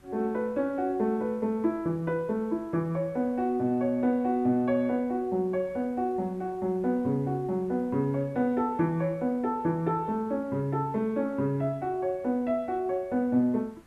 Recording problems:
hiss; slope -4 dB per octave, SNR 29 dB

